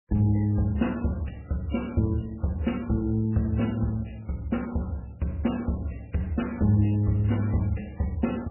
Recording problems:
lossy codec; AAC, then MP3, log-spectral distance 3 dB, nothing above 2.9 kHz

